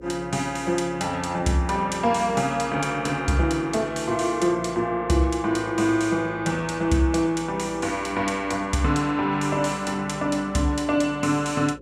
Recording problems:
hum; 60 Hz, harmonics up to 540 Hz, SNR 21 dB

